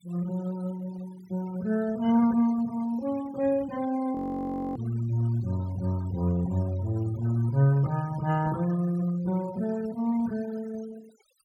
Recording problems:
noise reduction artefacts; signal-to-artefact ratio 21 dB
frozen audio; at 4 s for 0.5 s

